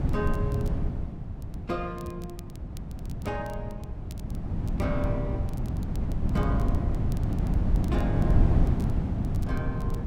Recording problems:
wind noise; below 170 Hz, SNR -7 dB
crackling; vinyl, SNR 20 dB

